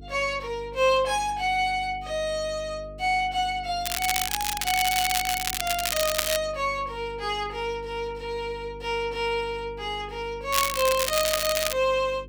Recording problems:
electrical hum; 50 Hz, harmonics up to 450 Hz, SNR 18 dB
crackling; from 4 to 6.5 s and from 11 to 12 s; loose cable, SNR 0 dB

